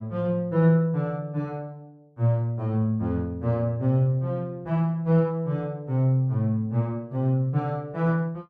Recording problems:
none

